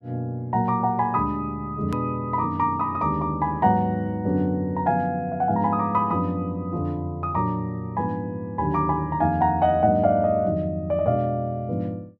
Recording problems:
click at an edit; at 2 s

